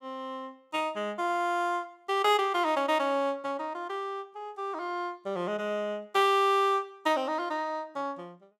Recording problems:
none

